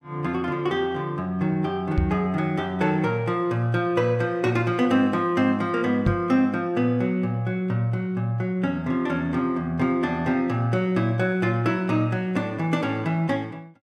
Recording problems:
microphone thump; at 2 s and at 6 s; peak +4 dB vs average level

